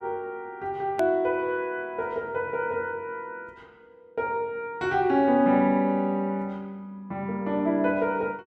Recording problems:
edit click; at 1 s

